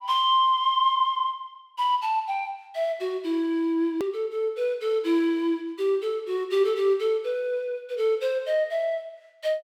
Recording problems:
hard cut with a click; at 4 s

